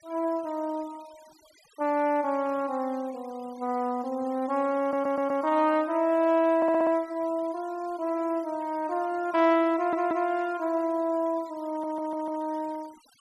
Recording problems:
noise reduction artefacts; signal-to-artefact ratio 26 dB
audio stuttering; 4 times, first at 5 s

